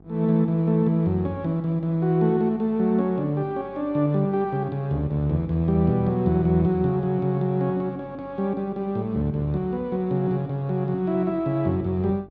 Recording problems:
electrical hum; 50 Hz, harmonics up to 1.2 kHz, SNR 27 dB

